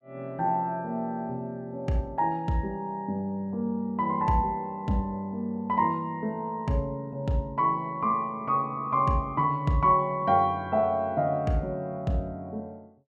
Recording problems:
none

